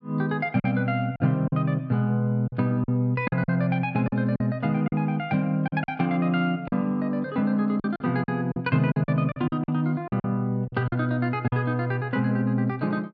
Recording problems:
lost packets; 8% of the sound replaced, filled with silence

